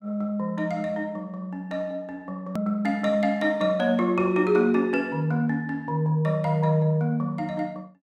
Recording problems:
click at an edit; at 2.5 s

